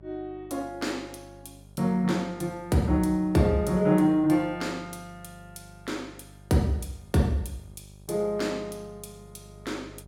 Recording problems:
hum; 50 Hz, harmonics up to 800 Hz, SNR 23 dB

